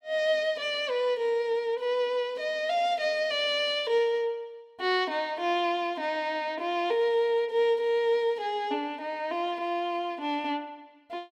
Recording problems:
none

